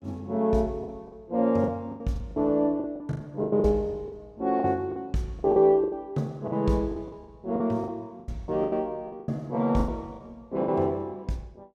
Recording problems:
packet loss; 14% of the sound replaced, filled with the last packet

